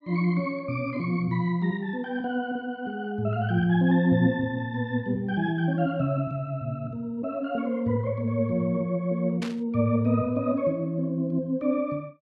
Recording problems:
static burst; at 9.5 s; peak -6 dB vs average level

